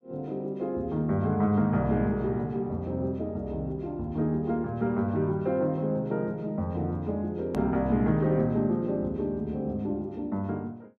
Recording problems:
hard cut with a click; at 7.5 s

